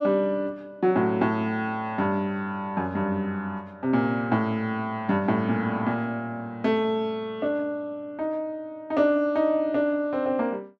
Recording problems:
none

